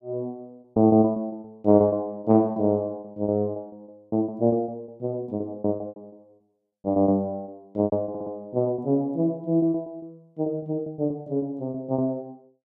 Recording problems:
packet loss; 18% of the sound replaced, filled with repeated pitch periods
stutter; at 8 s

